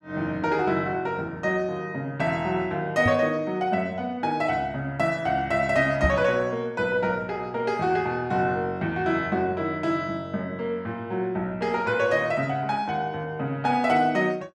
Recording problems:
microphone bump; at 3 s and at 6 s; peak +3 dB vs average level

